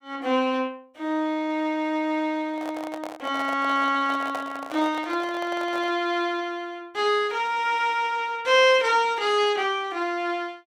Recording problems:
microphone handling noise; from 2.5 to 6 s; peak -5 dB vs average level

